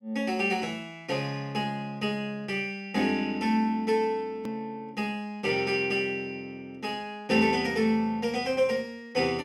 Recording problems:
click at an edit; at 4.5 s

